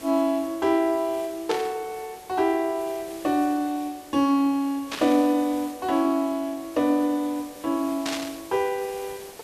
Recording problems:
background hiss; SNR 19 dB
static burst; at 1.5 s, at 5 s and at 8 s; peak -2 dB vs average level

